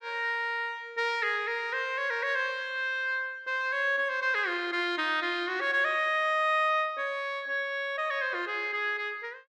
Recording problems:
none

